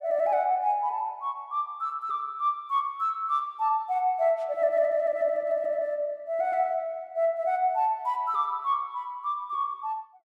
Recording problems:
none

